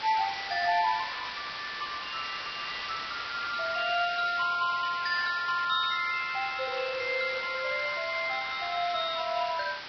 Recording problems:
codec artefacts; Vorbis, log-spectral distance 19 dB
hiss; SNR 8 dB

